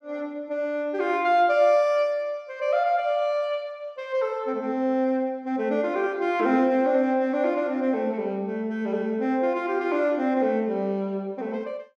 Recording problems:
none

